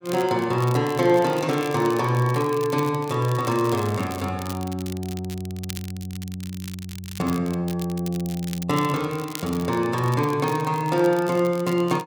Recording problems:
crackling; vinyl, SNR 16 dB

